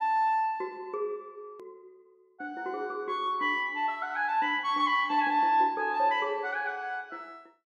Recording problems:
click at an edit; at 1.5 s

